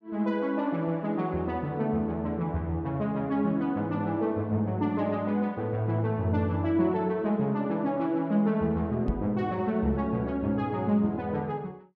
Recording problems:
knock on the microphone; at 9 s; peak +2 dB vs average level

